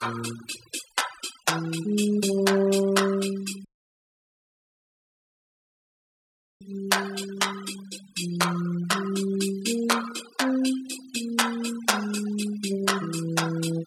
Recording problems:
noise reduction artefacts; signal-to-artefact ratio 13 dB
dropout; at 3.5 s for 3 s

